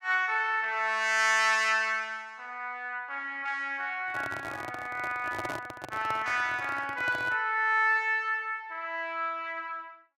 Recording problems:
microphone handling noise; from 4 to 7.5 s; peak -4 dB vs average level

